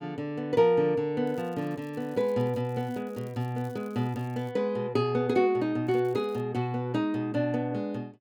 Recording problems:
crackling; from 1.5 to 4.5 s and at 6 s; loose cable, SNR 30 dB

